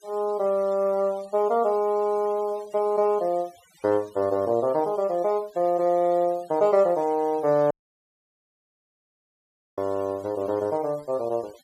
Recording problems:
denoising artefacts; signal-to-artefact ratio 27 dB
audio cutting out; at 7.5 s for 2 s

